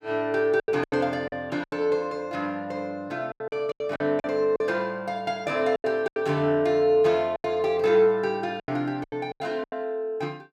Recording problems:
lost packets; 11% of the sound replaced, filled with silence

